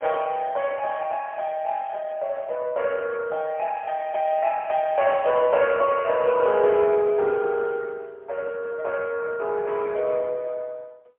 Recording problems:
telephone audio; 320 Hz to 3.2 kHz, AMR-NB, then MP3

